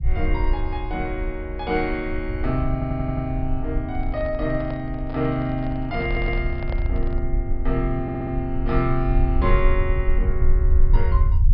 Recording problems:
low-pass filter; nothing above 5.5 kHz
low-frequency rumble; below 60 Hz, strongest tone 20 Hz, SNR 0 dB
stutter; at 2.5 s, at 6 s and at 8 s
handling noise; from 4 to 7.5 s; peak -4 dB vs average level

